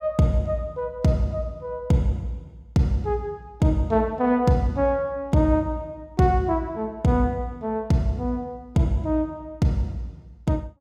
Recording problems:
none

